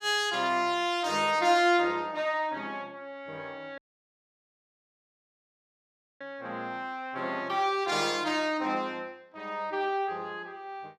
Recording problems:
dropout; at 4 s for 2.5 s

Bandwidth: 15.5 kHz